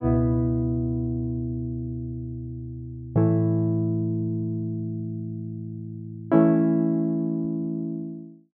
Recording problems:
none

